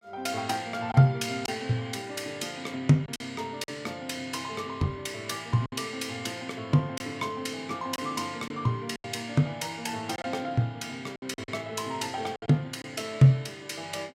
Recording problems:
lost packets; 4% of the sound replaced, filled with silence

